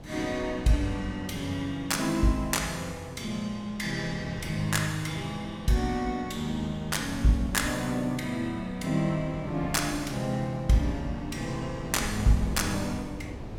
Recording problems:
wind noise; below 300 Hz, SNR 13 dB

